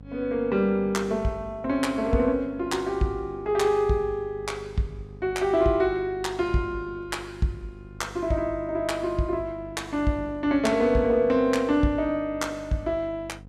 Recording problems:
hum; 50 Hz, harmonics up to 750 Hz, SNR 19 dB

